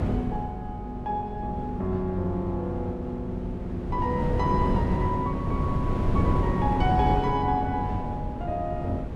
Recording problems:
mains hum; 50 Hz, harmonics up to 350 Hz, SNR 12 dB
wind noise; below 270 Hz, SNR 1 dB

